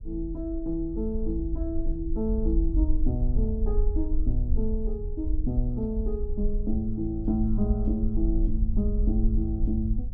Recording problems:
low-frequency rumble; below 54 Hz, SNR 0 dB

